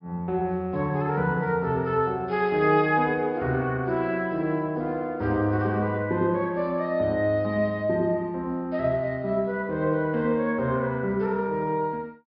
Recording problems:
treble cut off; nothing above 5.5 kHz

